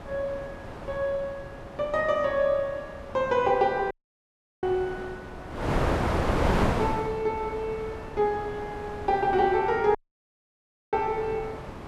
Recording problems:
wind noise; below 930 Hz, SNR 5 dB
audio cutting out; at 4 s for 0.5 s and at 10 s for 1 s

